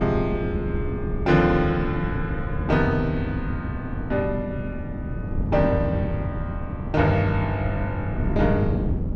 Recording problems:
wind on the microphone; below 200 Hz, SNR 4 dB

